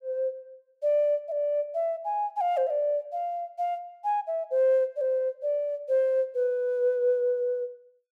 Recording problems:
none

